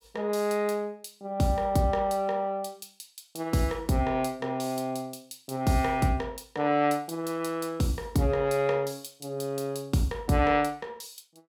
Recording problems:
none

